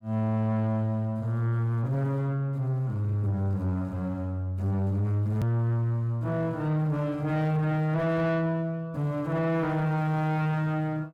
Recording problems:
distorted audio; soft clipping, signal-to-distortion ratio 10 dB
edit click; at 5.5 s

